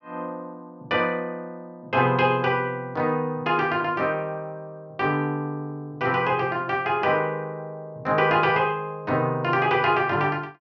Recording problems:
none

